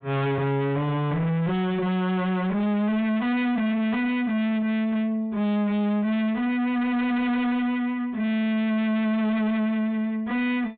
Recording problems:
treble missing; nothing above 4 kHz
distortion; soft clipping, signal-to-distortion ratio 7 dB

